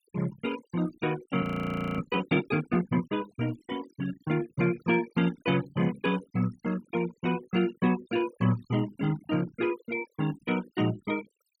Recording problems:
denoising artefacts; signal-to-artefact ratio 16 dB
audio freezing; at 1.5 s for 0.5 s

